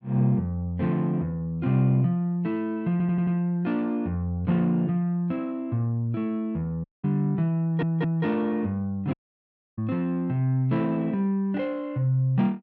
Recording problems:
audio stuttering; at 3 s and at 7.5 s
audio cutting out; at 7 s and at 9 s for 0.5 s

